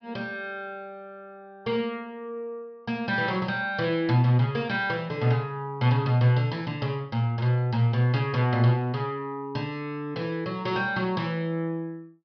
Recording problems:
treble cut off; nothing above 5.5 kHz

